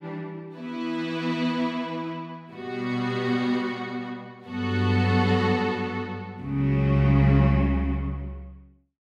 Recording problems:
none

